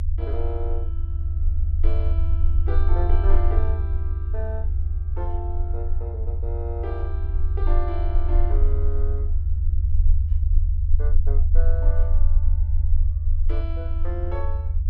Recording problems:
low-frequency rumble; below 76 Hz, strongest tone 18 Hz, SNR -11 dB

